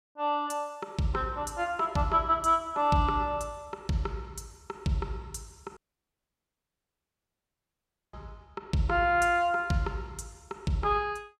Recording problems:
dropout; at 6 s for 2.5 s

